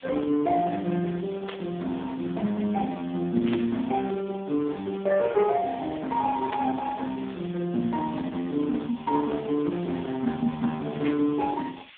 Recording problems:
phone line; 110 Hz to 3.2 kHz, AMR-NB
hiss; SNR 22 dB
burst of static; 4 times, first at 1.5 s; peak -5 dB vs average level

